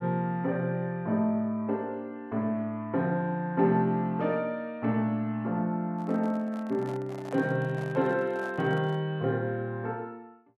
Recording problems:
microphone handling noise; from 6 to 9 s; peak -7 dB vs average level

